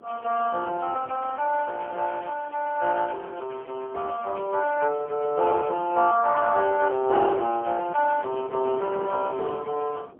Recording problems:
phone line; 300 Hz to 2 kHz, AMR-NB, then MP3
wind on the microphone; below 520 Hz, SNR 18 dB

